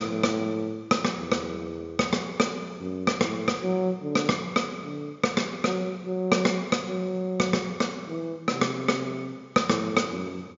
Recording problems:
low-pass filter; nothing above 7.2 kHz

